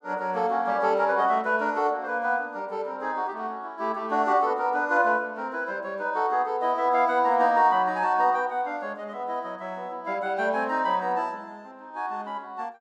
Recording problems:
none

